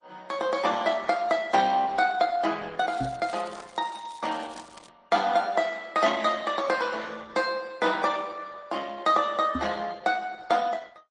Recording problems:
lossy compression; Opus, then MP3, log-spectral distance 5 dB, nothing above 9.5 kHz
crackling; from 3 to 5 s; loose cable, SNR 24 dB
knock on the microphone; at 3 s and at 9.5 s; peak -1 dB vs average level

